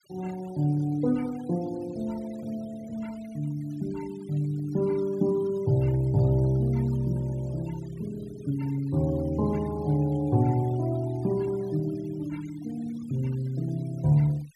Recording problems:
denoising artefacts; signal-to-artefact ratio 23 dB

